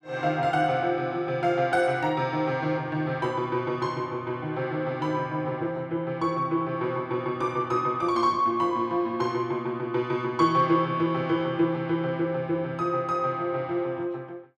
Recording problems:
none

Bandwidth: 13.5 kHz